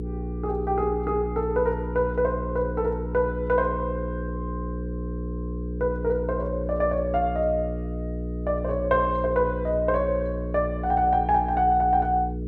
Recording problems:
hum; 60 Hz, harmonics up to 480 Hz, SNR 6 dB

